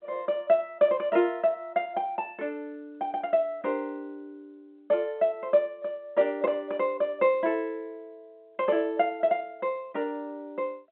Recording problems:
telephone audio; 150 Hz to 3.6 kHz, G.711

